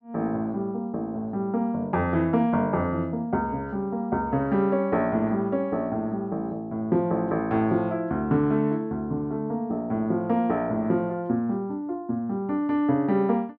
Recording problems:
none

